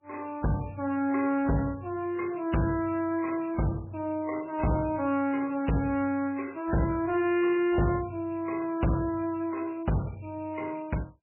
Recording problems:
codec artefacts; MP3, log-spectral distance 5 dB, nothing above 2.5 kHz
distorted audio; soft clipping, signal-to-distortion ratio 11 dB

